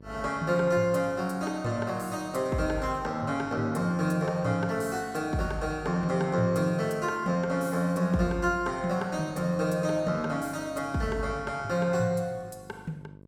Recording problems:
hum; 50 Hz, harmonics up to 1.1 kHz, SNR 23 dB

